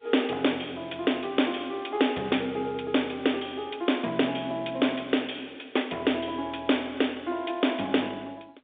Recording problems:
phone line; 220 Hz to 3.7 kHz, G.711
distortion; soft clipping, signal-to-distortion ratio 14 dB

